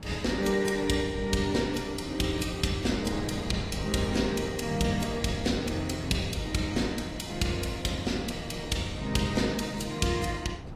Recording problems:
lossy codec; AAC, log-spectral distance 3 dB, nothing above 14.7 kHz
wind on the microphone; below 380 Hz, SNR 12 dB

